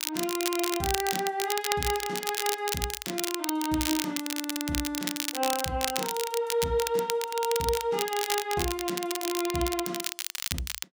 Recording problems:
crackle; vinyl, SNR 2 dB

